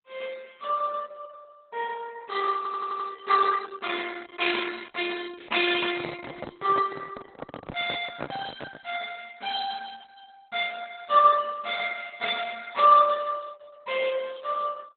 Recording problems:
lossy codec; MP2, then Opus, log-spectral distance 5 dB, nothing above 4 kHz
audio stuttering; at 2.5 s
handling noise; from 5.5 to 9 s; peak -1 dB vs average level

